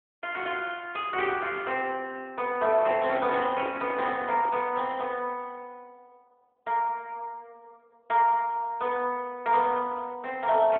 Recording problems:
telephone audio; 300 Hz to 3.4 kHz, AMR-NB
microphone handling noise; from 2.5 to 4.5 s; peak -7 dB vs average level

